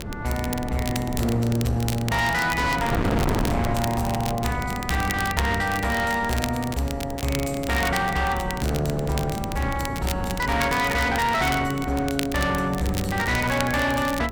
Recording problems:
distortion; hard clipping, signal-to-distortion ratio 6 dB
wind noise; below 410 Hz, SNR 7 dB
crackle; vinyl, SNR 11 dB

